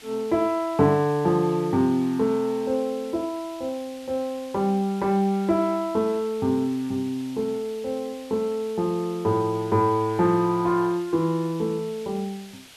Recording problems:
hiss; SNR 21 dB

